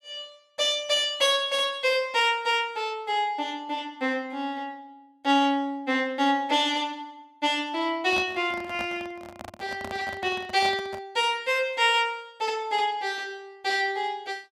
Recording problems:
handling noise; from 8 to 11 s; peak -5 dB vs average level

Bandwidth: 15.5 kHz